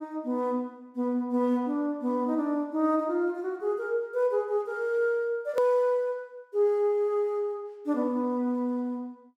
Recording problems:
hard cut with a click; at 5.5 s

